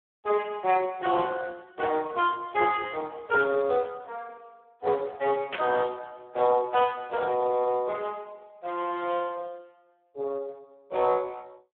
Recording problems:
telephone audio; 340 Hz to 2.9 kHz, Speex
burst of static; at 5.5 s; peak 0 dB vs average level

